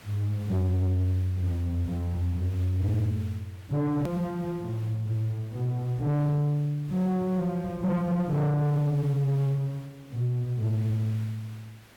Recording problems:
distorted audio; soft clipping, signal-to-distortion ratio 7 dB
background hiss; slope -3 dB per octave, SNR 24 dB
click at an edit; at 4 s

